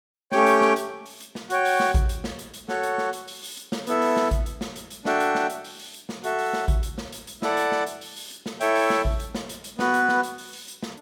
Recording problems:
none

